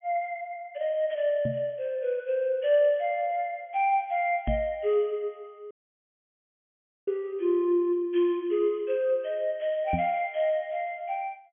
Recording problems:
treble missing; nothing above 3.4 kHz
knock on the microphone; at 1.5 s, at 4.5 s and at 10 s; peak +1 dB vs average level
dropout; at 5.5 s for 1.5 s

